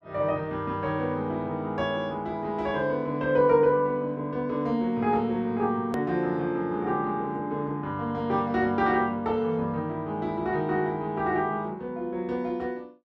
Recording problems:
click at an edit; at 6 s

